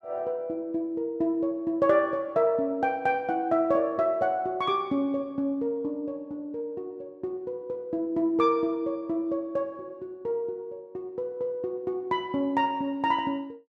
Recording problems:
none

